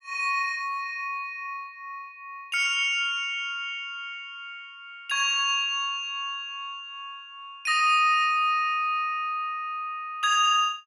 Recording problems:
none

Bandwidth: 15.5 kHz